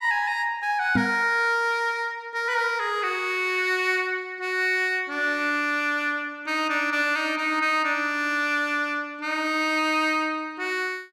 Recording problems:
knock on the microphone; at 1 s; peak +4 dB vs average level

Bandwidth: 14.5 kHz